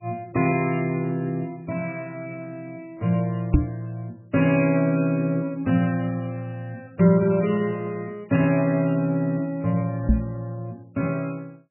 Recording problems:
lossy codec; MP3, log-spectral distance 2 dB, nothing above 2.5 kHz
microphone thump; at 3.5 s and at 10 s; peak +10 dB vs average level

